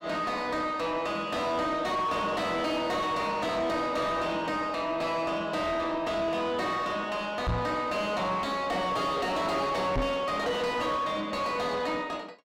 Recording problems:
distortion; soft clipping, signal-to-distortion ratio 8 dB
microphone thump; at 7.5 s and at 10 s; peak +5 dB vs average level

